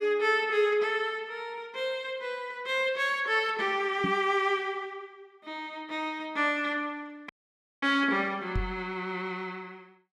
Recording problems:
knock on the microphone; at 4 s and at 8.5 s; peak +1 dB vs average level
audio cutting out; at 7.5 s for 0.5 s

